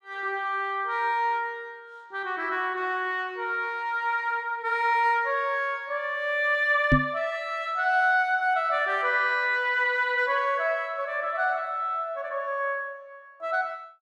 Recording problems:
microphone bump; at 7 s; peak +7 dB vs average level

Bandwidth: 13 kHz